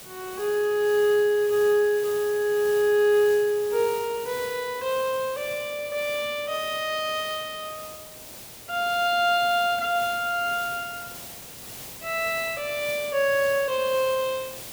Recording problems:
hiss; SNR 14 dB

